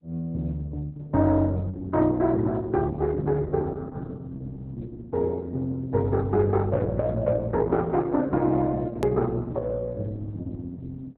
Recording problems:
codec artefacts; Opus, log-spectral distance 2 dB, nothing above 13.1 kHz
hard cut with a click; at 9 s

